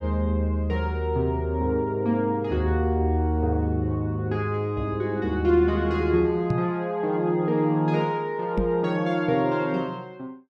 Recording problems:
microphone bump; at 6.5 s and at 8.5 s; peak +2 dB vs average level

